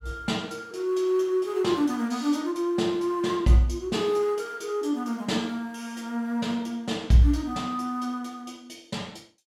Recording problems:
none

